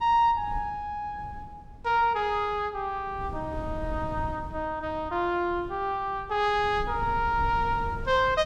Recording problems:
wind noise; below 130 Hz, SNR 13 dB

